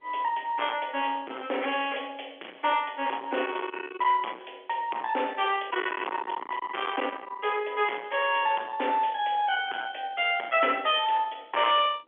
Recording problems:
telephone audio; 320 Hz to 3.4 kHz, G.711
distorted audio; soft clipping, signal-to-distortion ratio 7 dB
wind noise; below 2 kHz, SNR 14 dB

